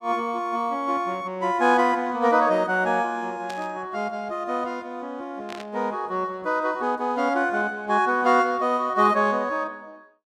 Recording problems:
burst of static; at 3.5 s and at 5.5 s; peak -11 dB vs average level

